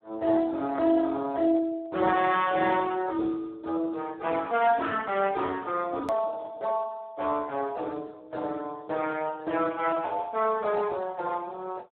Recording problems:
phone line; 170 Hz to 3.7 kHz, Speex
hard cut with a click; at 6 s

